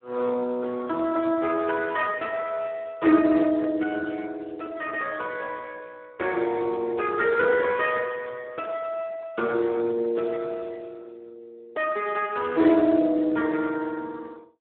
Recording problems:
phone line; 260 Hz to 3.7 kHz, Speex

